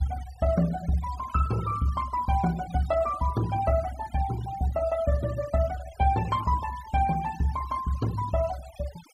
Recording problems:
noise reduction artefacts; signal-to-artefact ratio 17 dB

